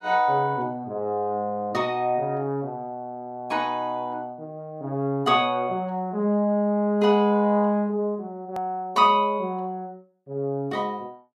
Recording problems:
edit click; at 8.5 s

